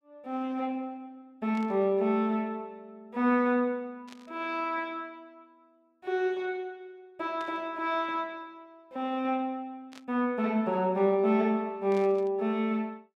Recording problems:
static burst; 5 times, first at 1.5 s; peak -14 dB vs average level

